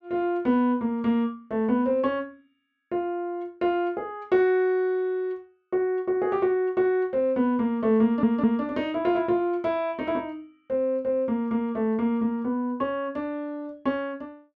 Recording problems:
audio stuttering; at 8 s

